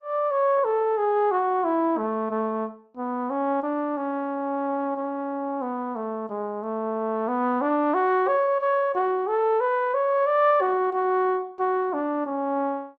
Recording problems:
lossy codec; Opus, log-spectral distance 2 dB

